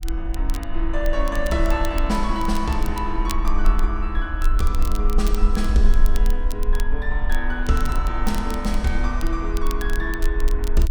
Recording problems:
low-frequency rumble; below 40 Hz, strongest tone 20 Hz, SNR -1 dB
crackling; vinyl, SNR 14 dB

